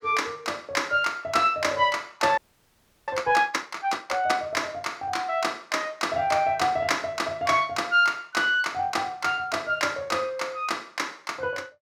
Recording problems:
frozen audio; at 2.5 s for 0.5 s

